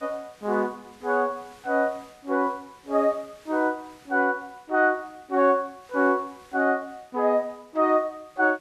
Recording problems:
hiss; slope -1 dB per octave, SNR 29 dB

